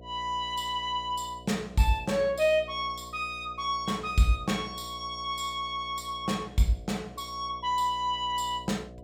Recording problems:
hum; 60 Hz, harmonics up to 720 Hz, SNR 18 dB

